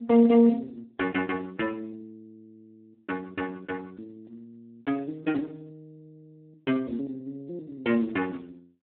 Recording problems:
telephone audio; 240 Hz to 2.8 kHz, Speex

